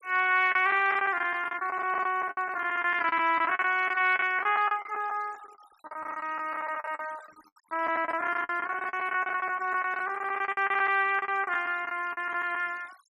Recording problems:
denoising artefacts; signal-to-artefact ratio 25 dB
lost packets; 18% of the sound replaced, filled with the last packet

